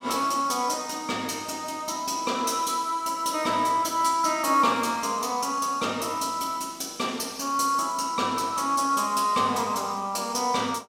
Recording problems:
none

